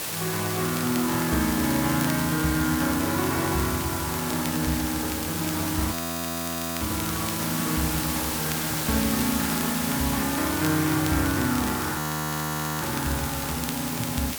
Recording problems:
hiss; slope -2 dB per octave, SNR 2 dB
crackle; vinyl, SNR 13 dB
frozen audio; at 6 s for 1 s and at 12 s for 1 s

